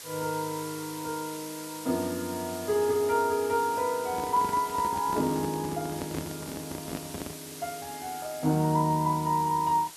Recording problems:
hiss; slope +1 dB per octave, SNR 12 dB
handling noise; from 4 to 7.5 s; peak -3 dB vs average level

